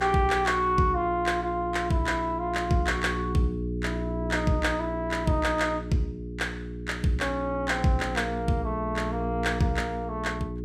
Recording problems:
hum; 60 Hz, harmonics up to 420 Hz, SNR 7 dB

